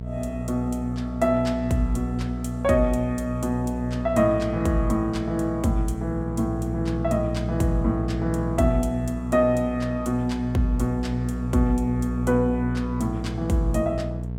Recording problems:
hum; 60 Hz, harmonics up to 660 Hz, SNR 6 dB

